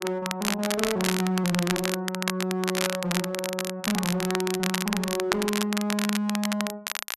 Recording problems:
distorted audio; hard clipping, uneven, signal-to-distortion ratio 9 dB
crackling; vinyl, SNR 2 dB

